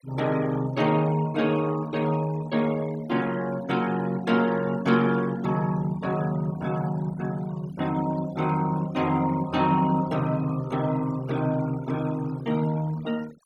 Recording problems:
denoising artefacts; signal-to-artefact ratio 19 dB

